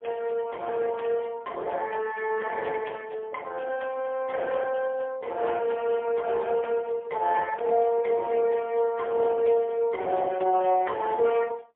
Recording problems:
telephone audio; 340 Hz to 3.2 kHz, AMR-NB, then MP3

